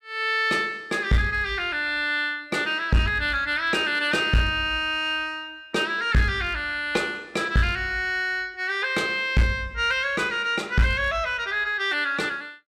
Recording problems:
distorted audio; hard clipping, uneven, signal-to-distortion ratio 10 dB

